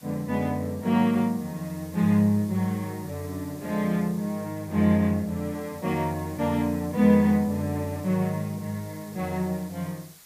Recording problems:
background hiss; slope +1 dB per octave, SNR 22 dB

